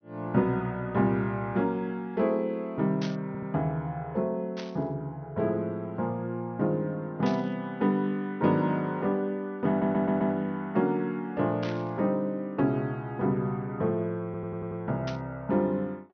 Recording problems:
treble cut off; nothing above 6.2 kHz
burst of static; 5 times, first at 3 s; peak -6 dB vs average level
stutter; at 3.5 s, at 9.5 s and at 14 s

